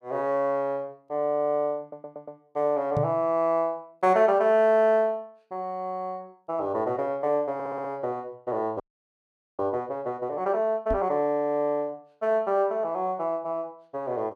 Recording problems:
stutter; at 2 s and at 7.5 s
microphone thump; at 3 s and at 11 s; peak 0 dB vs average level
frozen audio; at 9 s for 1 s

